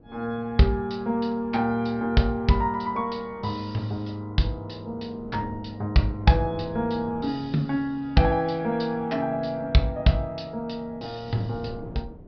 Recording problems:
treble cut off; nothing above 5.5 kHz
wind noise; below 330 Hz, SNR 20 dB

